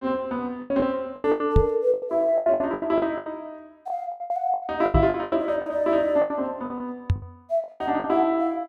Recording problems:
lost packets; 18% of the sound replaced, filled with the last packet
knock on the microphone; at 1.5 s, at 5 s and at 7 s; peak +8 dB vs average level

